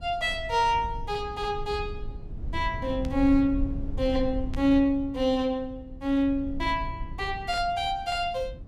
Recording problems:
low-frequency rumble; below 88 Hz, SNR 11 dB
burst of static; at 3 s, at 4.5 s and at 7.5 s; peak -13 dB vs average level

